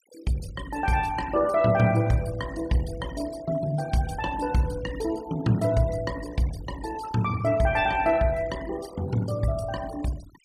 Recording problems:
denoising artefacts; signal-to-artefact ratio 19 dB

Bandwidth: 14.5 kHz